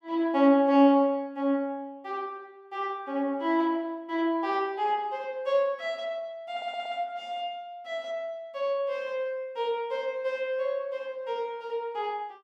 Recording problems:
audio stuttering; at 6.5 s

